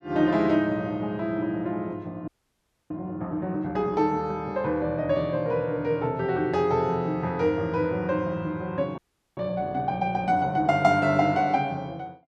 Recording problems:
audio freezing; at 2.5 s for 0.5 s and at 9 s

